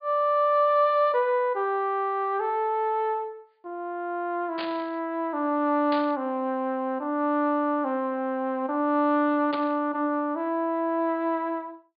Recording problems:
treble missing; nothing above 4.8 kHz
burst of static; at 4.5 s, at 6 s and at 9.5 s; peak -5 dB vs average level

